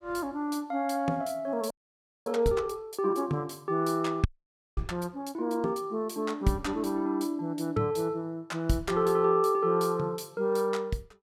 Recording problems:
audio freezing; at 1.5 s for 0.5 s and at 4.5 s for 0.5 s

